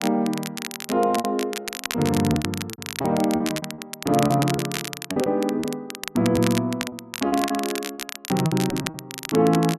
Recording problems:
crackling; vinyl, SNR 8 dB
packet loss; 11% of the sound replaced, filled with repeated pitch periods

